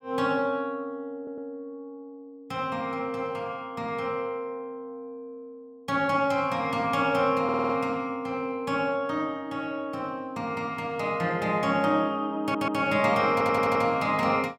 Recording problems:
audio stuttering; 4 times, first at 1 s

